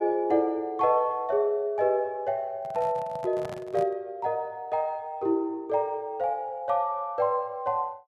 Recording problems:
microphone handling noise; from 2.5 to 4 s; peak -7 dB vs average level

